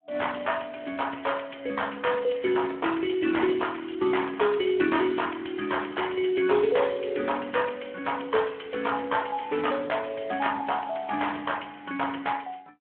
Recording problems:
telephone audio; 300 Hz to 3.3 kHz, Speex

